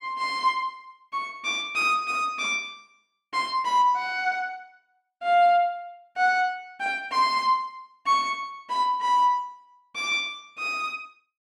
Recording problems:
none

